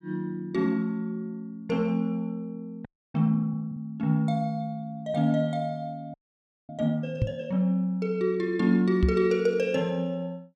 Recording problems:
frozen audio; at 3 s and at 6 s for 0.5 s
knock on the microphone; at 7 s and at 9 s; peak +6 dB vs average level

